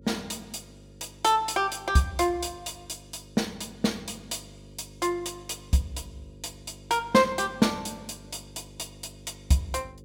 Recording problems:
hum; 50 Hz, harmonics up to 550 Hz, SNR 21 dB

